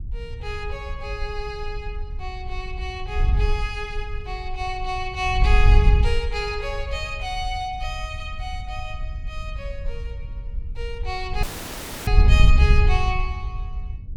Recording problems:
wind noise; below 70 Hz, SNR -3 dB
audio cutting out; at 11 s for 0.5 s

